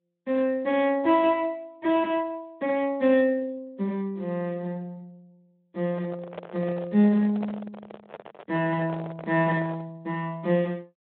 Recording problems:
telephone audio; 170 Hz to 3.9 kHz, Speex
handling noise; from 6 to 10 s; peak -6 dB vs average level

